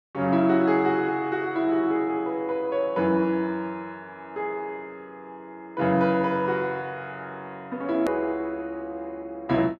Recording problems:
edit click; at 8 s

